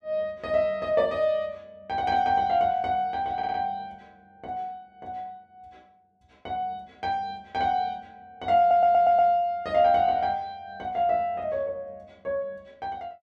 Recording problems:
stutter; at 3.5 s and at 8.5 s

